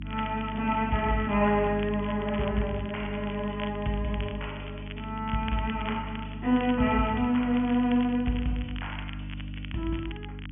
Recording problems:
low-pass filter; nothing above 3.3 kHz
electrical hum; 50 Hz, harmonics up to 300 Hz, SNR 10 dB
crackle; vinyl, SNR 16 dB

